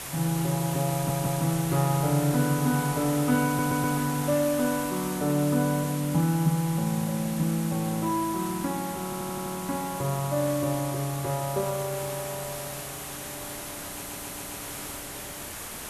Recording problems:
hiss; slope -2 dB per octave, SNR 9 dB
wind noise; below 1.2 kHz, SNR 25 dB
audio stuttering; 4 times, first at 1 s

